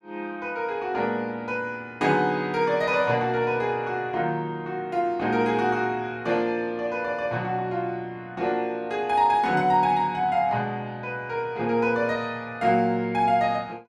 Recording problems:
none

